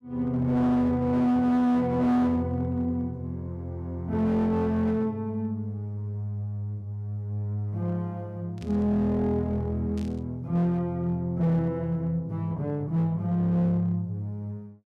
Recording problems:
distorted audio; hard clipping, signal-to-distortion ratio 11 dB
static burst; at 8.5 s and at 10 s; peak -16 dB vs average level

